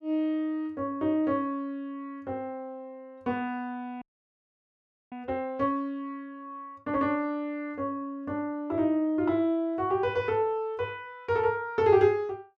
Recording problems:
audio freezing; at 4 s for 1 s

